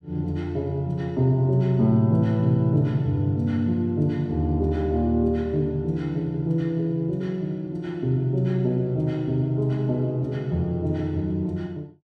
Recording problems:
none

